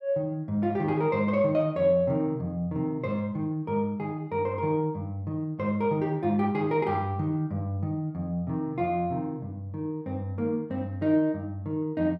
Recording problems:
none

